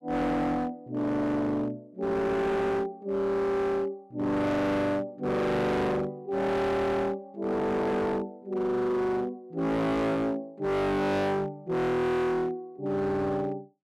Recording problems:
distorted audio; hard clipping, signal-to-distortion ratio 6 dB

